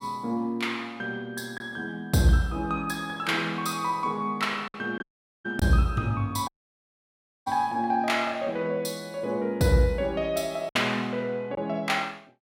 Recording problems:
packet loss; 1.8% of the sound replaced, filled with silence
dropout; at 5 s and at 6.5 s for 1 s

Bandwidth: 16 kHz